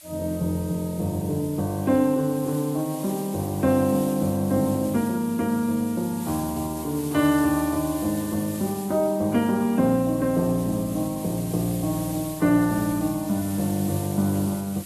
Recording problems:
lossy compression; AAC, log-spectral distance 8 dB
background hiss; slope +1 dB per octave, SNR 14 dB

